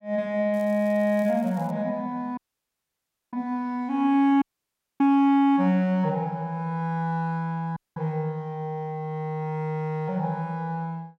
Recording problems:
crackling; from 0.5 to 1.5 s; loose cable, SNR 28 dB
dropout; at 2.5 s for 1 s, at 4.5 s for 0.5 s and at 8 s

